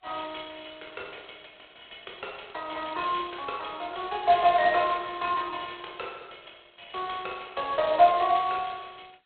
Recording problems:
phone line; 340 Hz to 3.6 kHz, G.726

